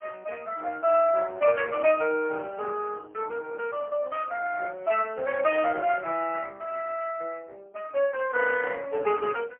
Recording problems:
phone line; 320 Hz to 2.9 kHz, AMR-NB, then MP3

